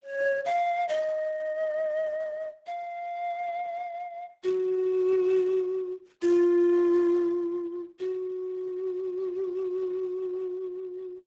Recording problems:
lossy compression; Speex, then Opus, log-spectral distance 2 dB, nothing above 7.6 kHz

